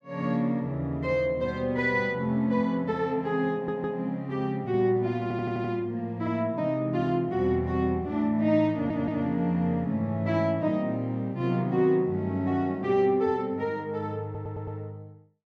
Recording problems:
audio stuttering; 4 times, first at 3.5 s

